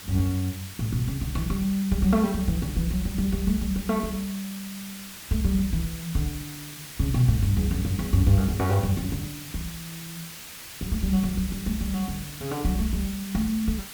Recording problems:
background hiss; slope +1 dB per octave, SNR 12 dB

